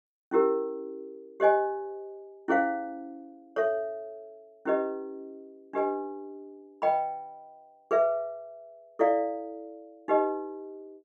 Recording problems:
none

